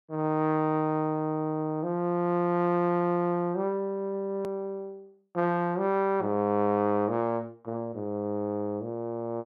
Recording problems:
click at an edit; at 4.5 s

